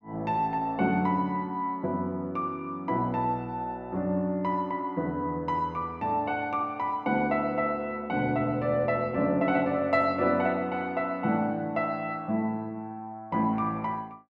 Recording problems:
none

